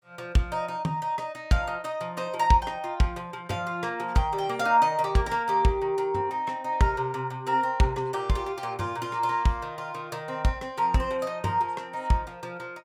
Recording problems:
none

